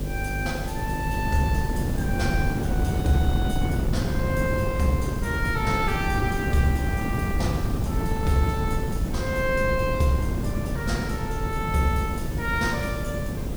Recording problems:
electrical hum; 50 Hz, harmonics up to 600 Hz, SNR 7 dB
background hiss; slope 0 dB per octave, SNR 15 dB
wind noise; below 220 Hz, SNR 0 dB

